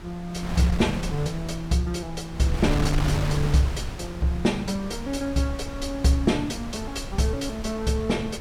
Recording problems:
wind noise; below 240 Hz, SNR 7 dB

